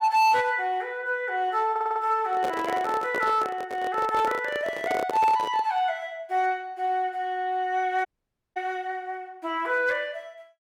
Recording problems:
distorted audio; hard clipping, signal-to-distortion ratio 11 dB
stutter; at 1.5 s
handling noise; from 2.5 to 5.5 s; peak -1 dB vs average level
audio cutting out; at 8 s for 0.5 s

